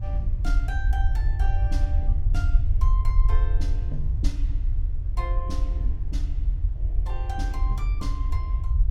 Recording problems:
rumble; below 62 Hz, SNR -12 dB
wind on the microphone; below 200 Hz, SNR 15 dB

